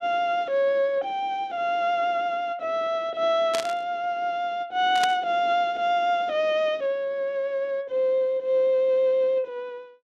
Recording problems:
burst of static; at 3.5 s and at 5 s; peak 0 dB vs average level

